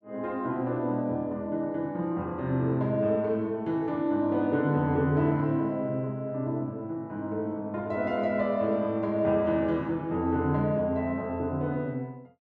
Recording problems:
none

